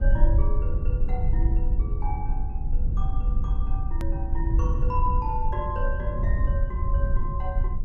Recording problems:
low-frequency rumble; below 62 Hz, strongest tone 22 Hz, SNR -8 dB
hard cut with a click; at 4 s

